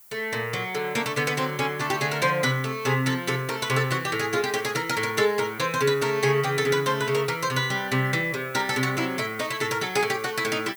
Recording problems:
background hiss; SNR 21 dB

